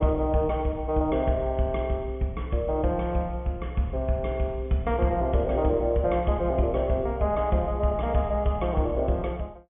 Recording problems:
low-pass filter; nothing above 3.4 kHz

